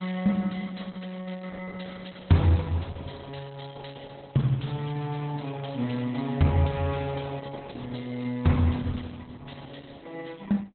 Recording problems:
lossy codec; Opus, log-spectral distance 8 dB, nothing above 4 kHz

